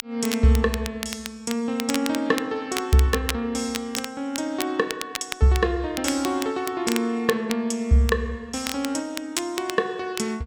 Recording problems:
crackle; vinyl, SNR 9 dB

